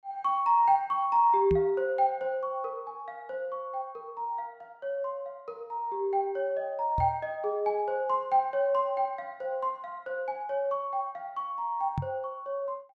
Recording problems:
microphone thump; at 1.5 s, at 7 s and at 12 s; peak +1 dB vs average level

